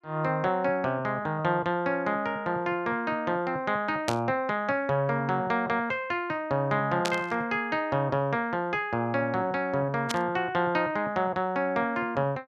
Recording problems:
burst of static; at 4 s, at 7 s and at 10 s; peak +2 dB vs average level

